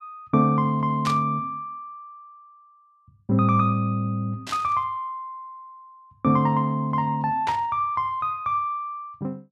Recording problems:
burst of static; at 1 s, at 4.5 s and at 7.5 s; peak -4 dB vs average level

